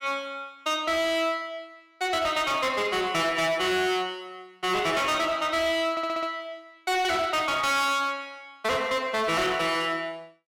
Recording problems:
distorted audio; hard clipping, uneven, signal-to-distortion ratio 8 dB
stutter; at 6 s

